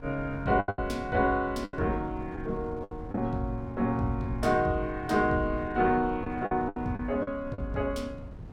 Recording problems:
wind on the microphone; below 160 Hz, SNR 14 dB
lost packets; 7% of the sound replaced, filled with the last packet

